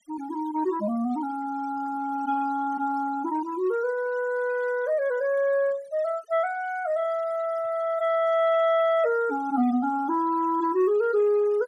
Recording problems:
noise reduction artefacts; signal-to-artefact ratio 24 dB

